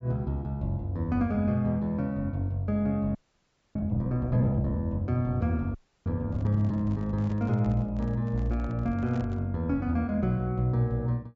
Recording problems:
treble missing; nothing above 8 kHz
frozen audio; at 3 s for 0.5 s and at 5.5 s
microphone handling noise; from 6.5 to 9.5 s; peak -11 dB vs average level

